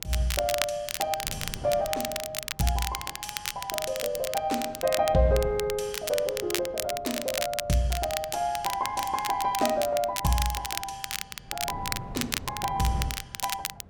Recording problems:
wind noise; below 220 Hz, SNR 16 dB
crackling; vinyl, SNR 4 dB

